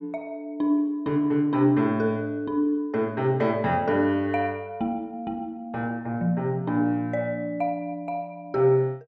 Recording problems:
none

